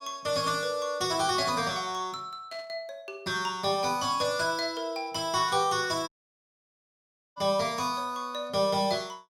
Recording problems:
static burst; at 2.5 s and at 5.5 s; peak -13 dB vs average level
audio cutting out; at 6 s for 1.5 s

